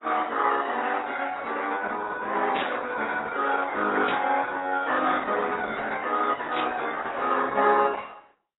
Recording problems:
lossy codec; Opus, then AAC, log-spectral distance 5 dB, nothing above 3.8 kHz
burst of static; at 2.5 s, at 4 s and at 6.5 s; peak -2 dB vs average level

